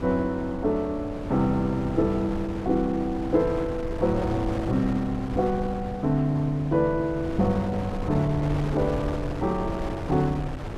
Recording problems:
wind on the microphone; below 460 Hz, SNR 8 dB

